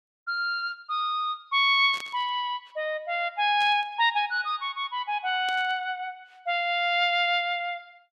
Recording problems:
static burst; at 2 s, at 3.5 s and at 5.5 s; peak -10 dB vs average level

